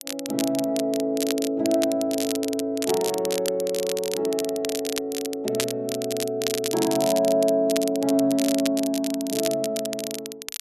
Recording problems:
crackle; vinyl, SNR 7 dB

